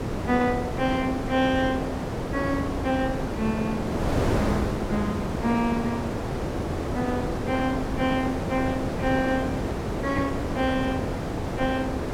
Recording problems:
wind on the microphone; below 650 Hz, SNR 1 dB

